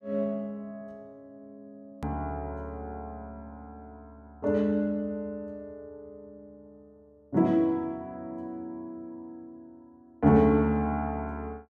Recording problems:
hard cut with a click; at 2 s

